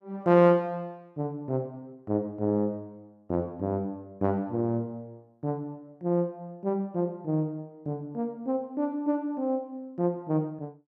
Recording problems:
none

